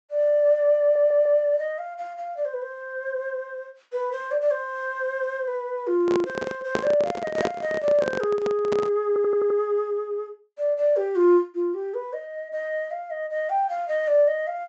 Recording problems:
treble cut off; nothing above 8 kHz
audio stuttering; at 1 s and at 9 s
handling noise; from 6 to 9 s; peak +3 dB vs average level

